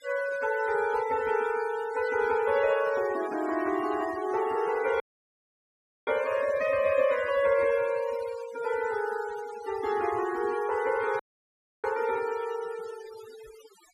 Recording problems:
denoising artefacts; signal-to-artefact ratio 15 dB
dropout; at 5 s for 1 s and at 11 s for 0.5 s

